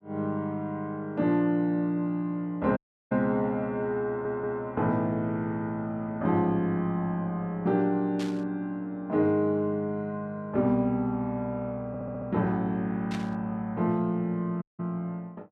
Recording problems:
audio cutting out; at 3 s and at 15 s
audio stuttering; at 4 s and at 12 s
static burst; at 8 s and at 13 s; peak -8 dB vs average level

